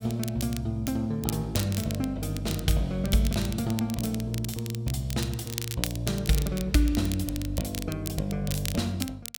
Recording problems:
crackling; vinyl, SNR 9 dB

